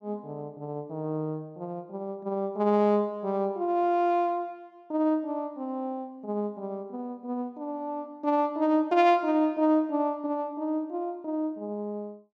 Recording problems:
none

